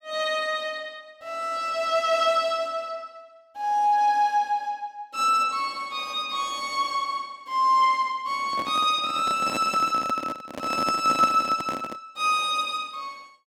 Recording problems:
handling noise; from 8.5 to 12 s; peak -1 dB vs average level

